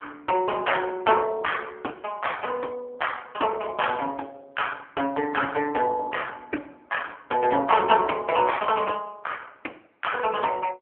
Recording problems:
phone line; 260 Hz to 3.3 kHz, AMR-NB

